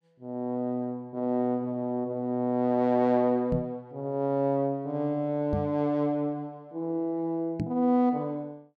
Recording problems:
microphone bump; at 3.5 s, at 5.5 s and at 7.5 s; peak +3 dB vs average level

